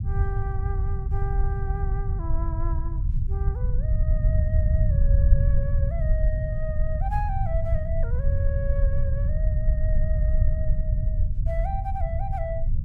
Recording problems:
rumble; below 82 Hz, SNR -11 dB

